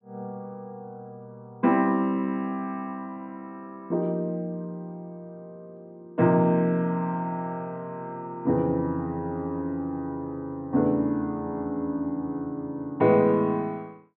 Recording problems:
treble missing; nothing above 4 kHz

